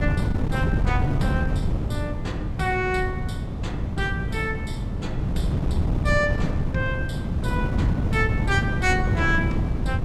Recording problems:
wind noise; below 190 Hz, SNR -2 dB

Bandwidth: 14.5 kHz